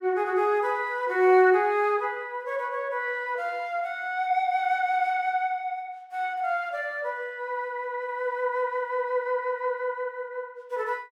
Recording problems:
none

